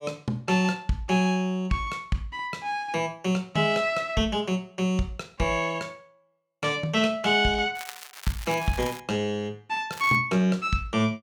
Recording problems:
crackling; from 8 to 9 s and at 10 s; loose cable, SNR 15 dB

